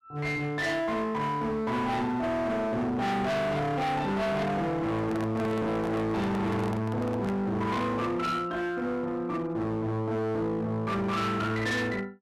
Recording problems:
distorted audio; hard clipping, signal-to-distortion ratio 6 dB
handling noise; from 5 to 7.5 s; peak -4 dB vs average level

